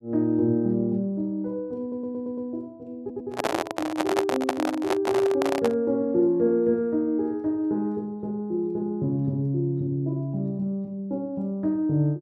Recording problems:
audio stuttering; at 2 s and at 3 s
microphone handling noise; from 3 to 6 s; peak +5 dB vs average level

